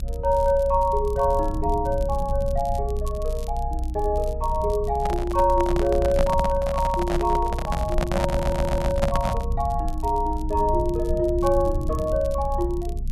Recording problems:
rumble; below 64 Hz, strongest tone 28 Hz, SNR 5 dB
crackle; vinyl, SNR 25 dB
handling noise; from 5 to 9.5 s; peak +3 dB vs average level
audio stuttering; at 8.5 s

